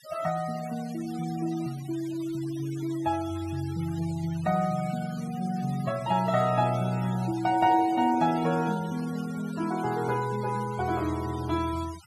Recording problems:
denoising artefacts; signal-to-artefact ratio 18 dB

